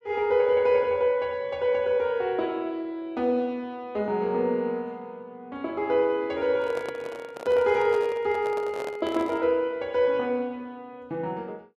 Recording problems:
handling noise; from 6.5 to 9.5 s; peak -6 dB vs average level

